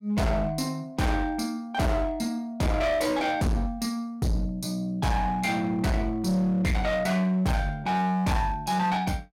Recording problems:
distortion; hard clipping, uneven, signal-to-distortion ratio 7 dB

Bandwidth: 16.5 kHz